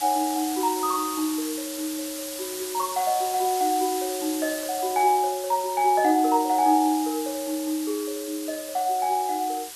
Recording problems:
background hiss; slope +2 dB per octave, SNR 9 dB

